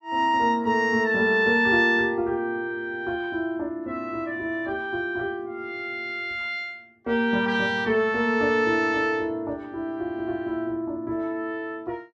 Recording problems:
none

